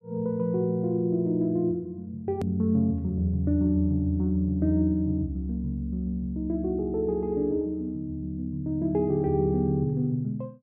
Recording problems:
hard cut with a click; at 2.5 s

